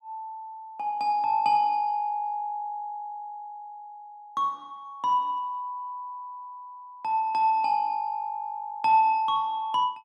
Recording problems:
none

